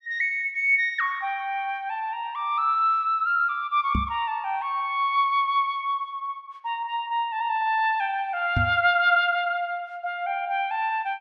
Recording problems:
microphone bump; at 4 s and at 8.5 s; peak +2 dB vs average level

